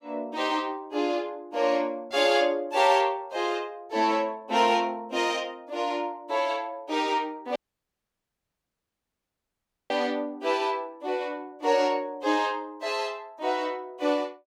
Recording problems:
dropout; at 7.5 s for 2.5 s

